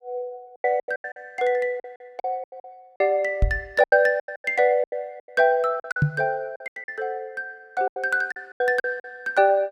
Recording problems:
lost packets; 16% of the sound replaced, filled with silence
knock on the microphone; at 3.5 s and at 6 s; peak +7 dB vs average level

